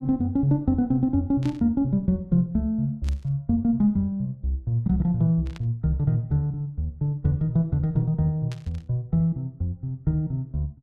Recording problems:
burst of static; 4 times, first at 1.5 s; peak -13 dB vs average level

